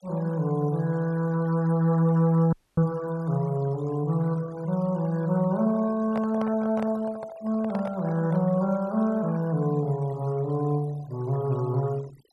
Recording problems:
noise reduction artefacts; signal-to-artefact ratio 22 dB
dropout; at 2.5 s
handling noise; from 6 to 8.5 s; peak -4 dB vs average level

